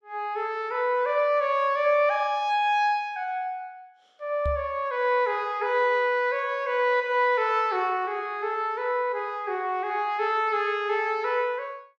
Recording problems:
knock on the microphone; at 4.5 s; peak -3 dB vs average level

